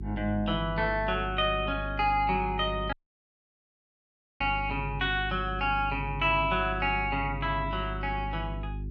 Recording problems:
electrical hum; 50 Hz, harmonics up to 400 Hz, SNR 9 dB
dropout; at 3 s for 1.5 s

